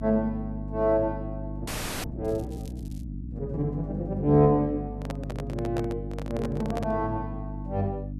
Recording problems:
hum; 50 Hz, harmonics up to 300 Hz, SNR 8 dB
audio freezing; at 1.5 s
crackling; at 2.5 s; loose cable, SNR 27 dB
microphone handling noise; from 5 to 7 s; peak -3 dB vs average level

